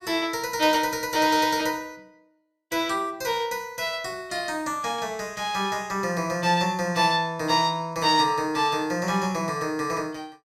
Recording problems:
none

